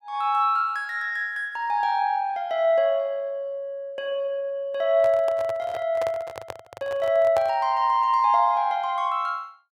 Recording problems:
microphone handling noise; from 5 to 7.5 s; peak -4 dB vs average level

